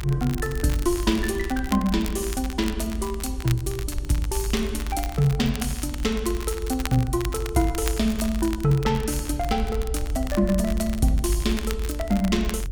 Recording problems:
electrical hum; 60 Hz, harmonics up to 540 Hz, SNR 24 dB
rumble; below 68 Hz, strongest tone 52 Hz, SNR 7 dB
crackling; vinyl, SNR 14 dB

